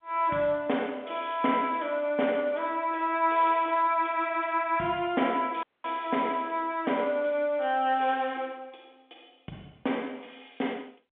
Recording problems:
phone line; 220 Hz to 3.5 kHz, G.711
dropout; at 5.5 s

